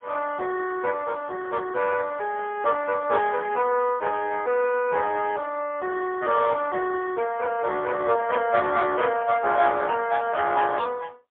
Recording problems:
telephone audio; 320 Hz to 2.5 kHz, AMR-NB, then MP3

